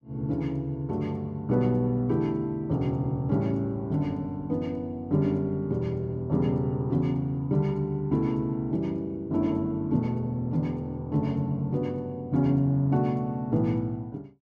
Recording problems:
none

